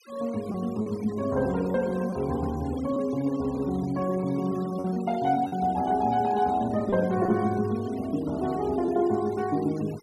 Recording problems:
denoising artefacts; signal-to-artefact ratio 21 dB
lost packets; 3% of the sound replaced, filled with repeated pitch periods

